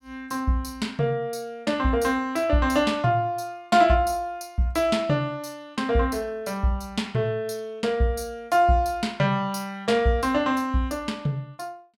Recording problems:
none

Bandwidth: 17 kHz